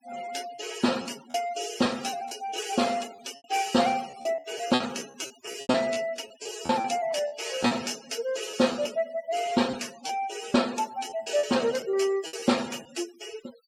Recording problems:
denoising artefacts; signal-to-artefact ratio 15 dB
packet loss; 10% of the sound replaced, filled with repeated pitch periods

